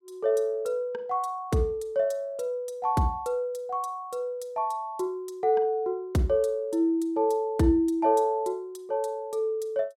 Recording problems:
none

